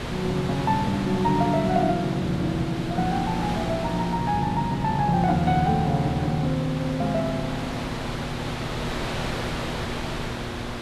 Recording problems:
hum; 60 Hz, harmonics up to 840 Hz, SNR 11 dB
wind noise; below 2.3 kHz, SNR 8 dB

